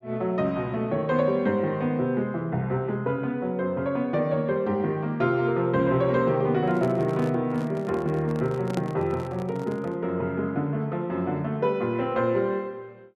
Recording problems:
handling noise; from 6.5 to 10 s; peak -3 dB vs average level

